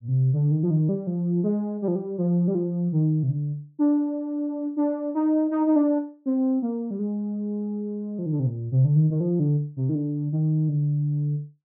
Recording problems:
none

